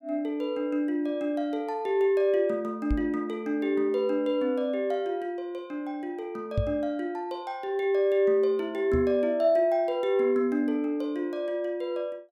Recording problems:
microphone thump; at 3 s, at 6.5 s and at 9 s; peak +3 dB vs average level

